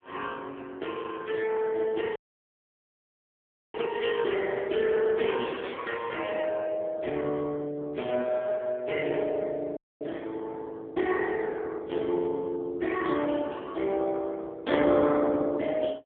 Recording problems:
phone line; 170 Hz to 3.4 kHz, AMR-NB
audio cutting out; at 2 s for 1.5 s and at 10 s

